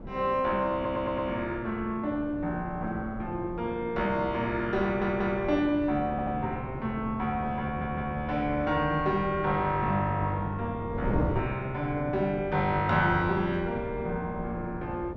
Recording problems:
wind noise; below 360 Hz, SNR 10 dB
audio stuttering; 4 times, first at 1 s

